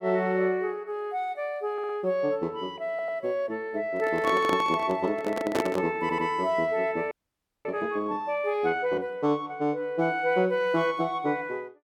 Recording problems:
stutter; at 1.5 s, at 3 s and at 6 s
handling noise; from 4 to 6 s; peak +4 dB vs average level
audio freezing; at 7 s for 0.5 s

